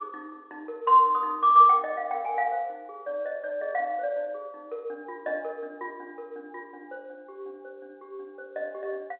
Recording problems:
phone line; 300 Hz to 3.3 kHz, G.711

